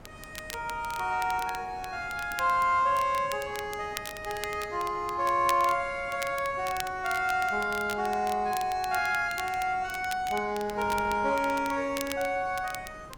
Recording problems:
wind noise; below 750 Hz, SNR 20 dB
crackle; vinyl, SNR 14 dB

